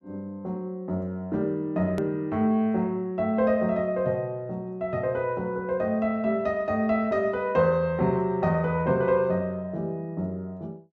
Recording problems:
edit click; at 2 s

